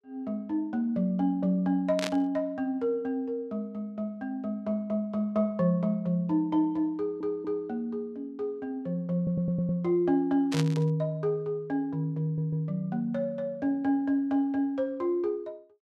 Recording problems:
static burst; at 2 s and at 11 s; peak +1 dB vs average level
audio stuttering; at 7 s, at 9 s and at 12 s

